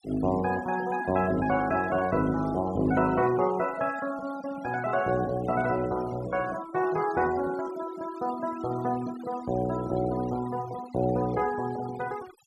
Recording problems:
denoising artefacts; signal-to-artefact ratio 17 dB

